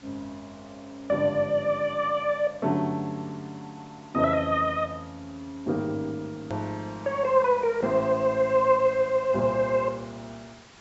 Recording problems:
low-pass filter; nothing above 7.7 kHz
hiss; slope -2 dB per octave, SNR 25 dB
click at an edit; at 6.5 s

